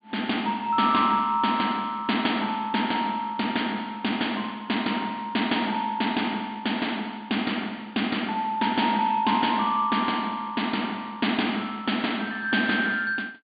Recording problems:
treble cut off; nothing above 4.7 kHz

